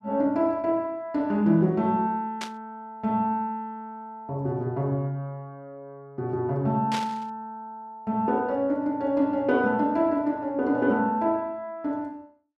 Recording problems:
static burst; at 2.5 s and at 7 s; peak -2 dB vs average level

